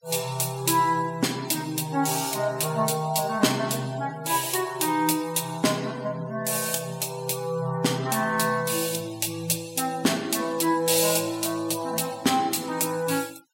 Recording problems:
denoising artefacts; signal-to-artefact ratio 21 dB

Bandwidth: 16 kHz